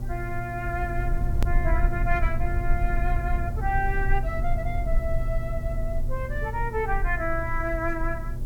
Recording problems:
electrical hum; 60 Hz, harmonics up to 840 Hz, SNR 7 dB
hiss; slope +1 dB per octave, SNR 25 dB
low-frequency rumble; below 54 Hz, strongest tone 20 Hz, SNR 0 dB
click at an edit; at 1.5 s

